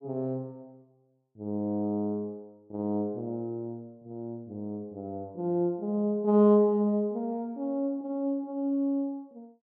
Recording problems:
none

